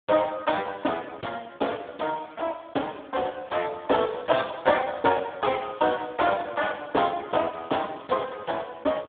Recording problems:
phone line; 240 Hz to 3.7 kHz, Speex

